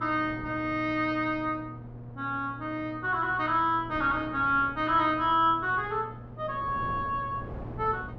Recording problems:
hum; 60 Hz, harmonics up to 960 Hz, SNR 17 dB
wind noise; below 460 Hz, SNR 17 dB

